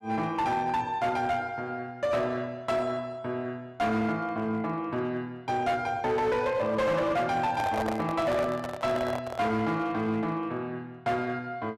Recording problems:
distorted audio; hard clipping, uneven, signal-to-distortion ratio 11 dB
handling noise; from 7.5 to 9.5 s; peak +1 dB vs average level

